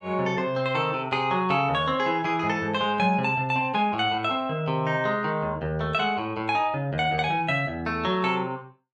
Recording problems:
none

